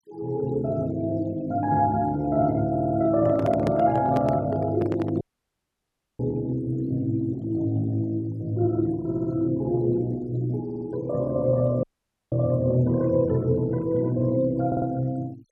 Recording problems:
denoising artefacts; signal-to-artefact ratio 26 dB
audio stuttering; 4 times, first at 2.5 s
microphone handling noise; from 3 to 5 s; peak -1 dB vs average level
audio cutting out; at 5 s for 1 s and at 12 s

